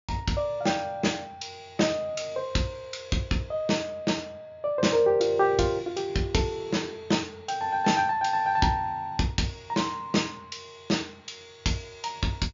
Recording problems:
treble missing; nothing above 7.2 kHz

